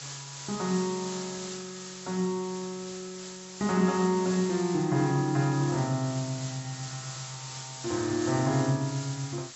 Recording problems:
treble missing; nothing above 7.7 kHz
hiss; slope +1 dB per octave, SNR 11 dB

